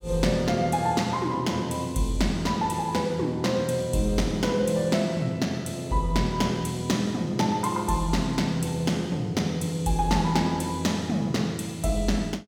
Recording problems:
none

